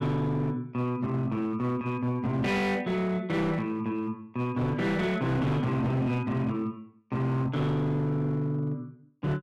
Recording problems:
distortion; hard clipping, signal-to-distortion ratio 10 dB

